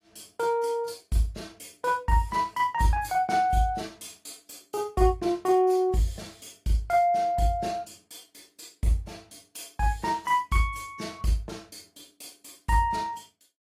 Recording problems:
lossy codec; AAC, log-spectral distance 3 dB

